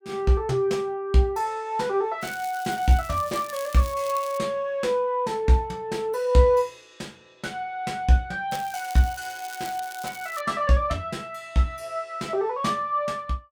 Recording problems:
crackling; from 2 to 4.5 s and from 8.5 to 10 s; loose cable, SNR 16 dB

